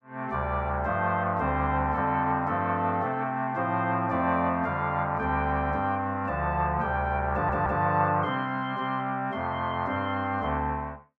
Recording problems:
stutter; at 7.5 s

